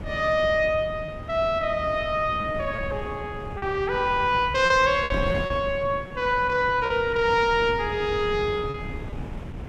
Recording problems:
wind noise; below 280 Hz, SNR 12 dB
packet loss; 5% of the sound replaced, filled with repeated pitch periods

